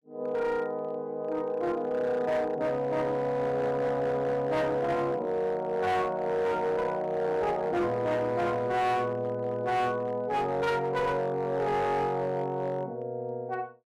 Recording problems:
distortion; hard clipping, signal-to-distortion ratio 11 dB

